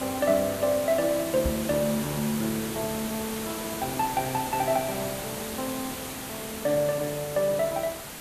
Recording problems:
background hiss; slope -3 dB per octave, SNR 7 dB
microphone bump; at 1.5 s; peak +2 dB vs average level

